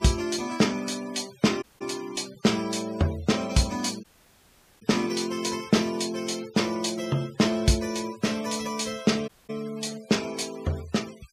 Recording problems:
denoising artefacts; signal-to-artefact ratio 18 dB
audio cutting out; at 1.5 s, at 4 s for 1 s and at 9.5 s

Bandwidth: 15 kHz